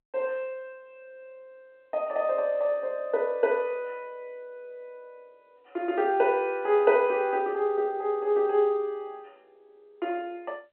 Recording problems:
phone line; 260 Hz to 3.5 kHz, G.711

